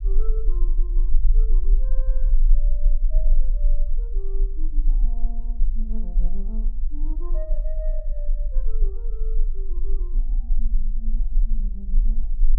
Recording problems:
low-frequency rumble; below 34 Hz, strongest tone 16 Hz, SNR -18 dB

